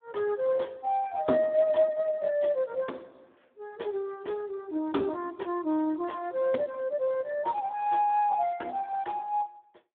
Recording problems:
telephone audio; 220 Hz to 3.6 kHz, Speex

